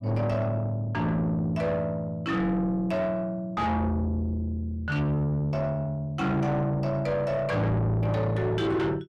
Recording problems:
distortion; soft clipping, signal-to-distortion ratio 6 dB

